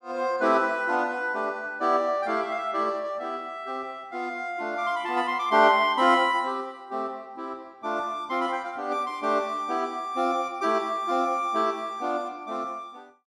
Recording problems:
none

